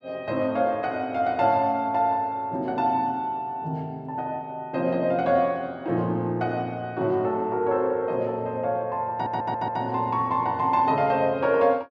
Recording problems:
audio stuttering; at 9 s

